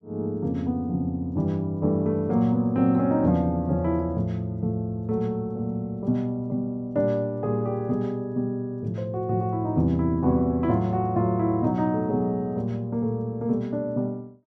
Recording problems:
none

